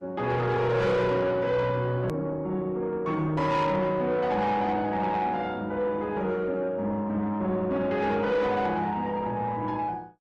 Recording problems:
lossy compression; Opus, log-spectral distance 2 dB, nothing above 13.1 kHz
distortion; soft clipping, signal-to-distortion ratio 10 dB
hard cut with a click; at 2 s

